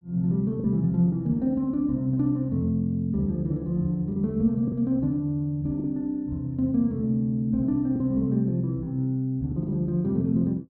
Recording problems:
packet loss; 3% of the sound replaced, filled with the last packet

